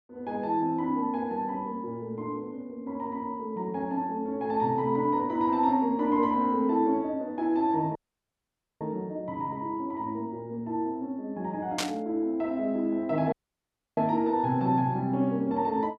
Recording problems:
audio cutting out; at 8 s for 1 s and at 13 s for 0.5 s
static burst; at 12 s; peak +3 dB vs average level

